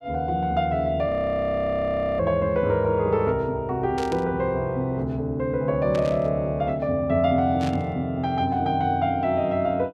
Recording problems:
frozen audio; at 1 s for 1 s
static burst; at 4 s, at 6 s and at 7.5 s; peak -9 dB vs average level

